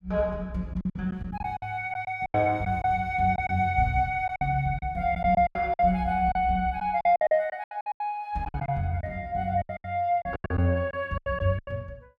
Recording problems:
lost packets; 14% of the sound replaced, filled with silence

